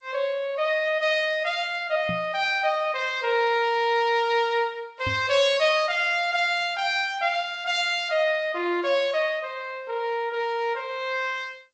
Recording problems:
lossy compression; G.722, then AAC, log-spectral distance 2 dB, nothing above 7.6 kHz
microphone bump; at 2 s and at 5 s; peak -4 dB vs average level

